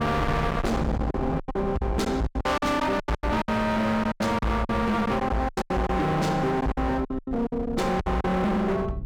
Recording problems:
distorted audio; hard clipping, signal-to-distortion ratio 6 dB
wind noise; below 470 Hz, SNR 9 dB
packet loss; 14% of the sound replaced, filled with silence

